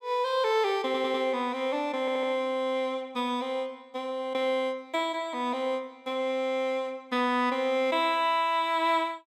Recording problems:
stutter; at 1 s and at 2 s

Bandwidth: 16.5 kHz